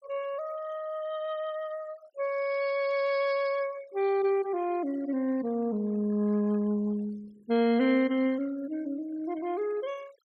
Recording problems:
denoising artefacts; signal-to-artefact ratio 23 dB

